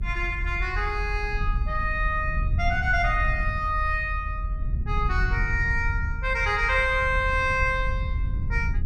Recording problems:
rumble; below 78 Hz, strongest tone 42 Hz, SNR 4 dB

